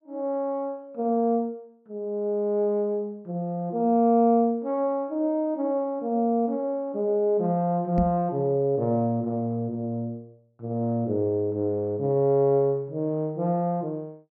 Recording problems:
knock on the microphone; at 8 s; peak +2 dB vs average level

